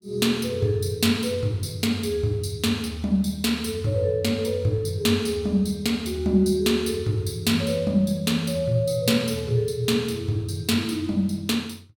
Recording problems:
none

